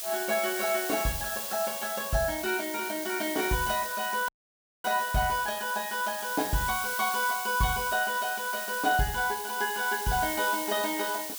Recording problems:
background hiss; slope +3 dB per octave, SNR 5 dB
dropout; at 4.5 s for 0.5 s

